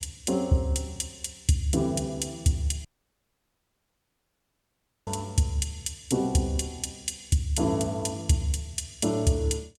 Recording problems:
audio cutting out; at 3 s for 2 s

